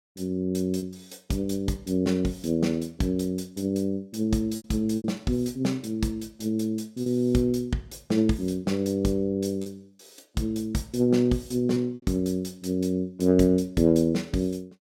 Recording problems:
packet loss; 3% of the sound replaced, filled with repeated pitch periods

